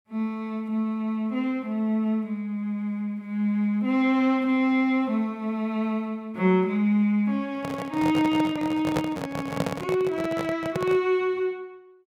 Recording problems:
handling noise; from 7.5 to 11 s; peak +3 dB vs average level

